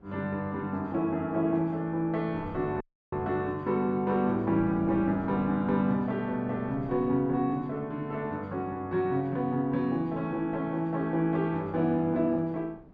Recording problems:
wind noise; below 410 Hz, SNR 21 dB
dropout; at 3 s

